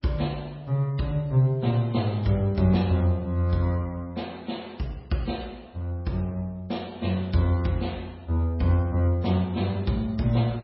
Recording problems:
codec artefacts; MP3, log-spectral distance 2 dB

